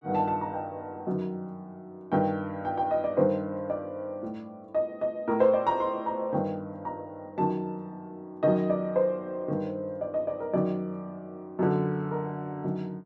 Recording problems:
none

